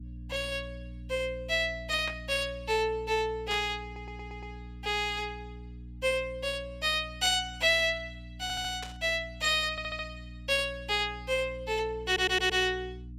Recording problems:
electrical hum; 60 Hz, harmonics up to 300 Hz, SNR 15 dB
static burst; at 2 s, at 3.5 s and at 9 s; peak -7 dB vs average level
stutter; 4 times, first at 4 s

